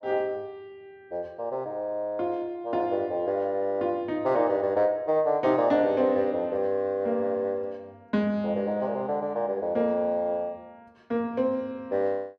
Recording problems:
none

